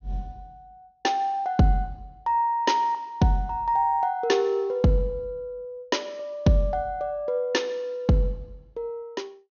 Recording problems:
low-pass filter; nothing above 6.7 kHz

